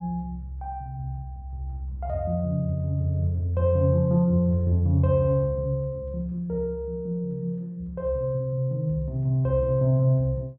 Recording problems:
none

